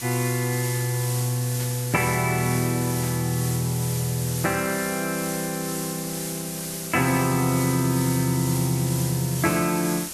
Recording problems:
hiss; SNR 6 dB
burst of static; at 1.5 s and at 3 s; peak -12 dB vs average level

